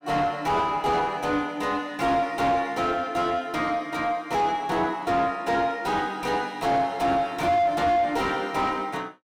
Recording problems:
distorted audio; soft clipping, signal-to-distortion ratio 6 dB

